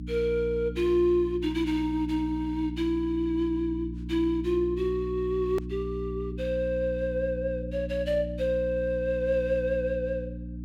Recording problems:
hum; 60 Hz, harmonics up to 300 Hz, SNR 9 dB
hard cut with a click; at 5.5 s

